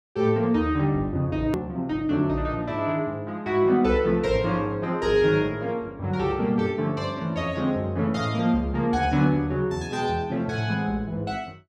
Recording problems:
edit click; at 1.5 s

